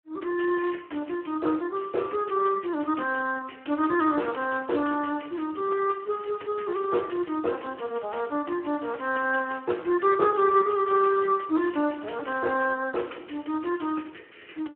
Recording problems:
telephone audio; 260 Hz to 2.8 kHz, Speex

